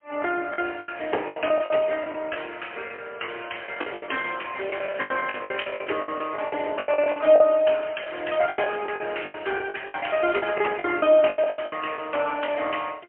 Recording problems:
telephone audio; 300 Hz to 3.1 kHz, AMR-NB, then MP3
lost packets; 17% of the sound replaced, filled with the last packet

